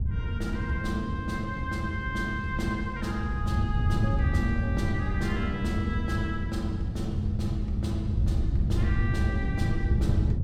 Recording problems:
wind on the microphone; below 120 Hz, SNR -2 dB

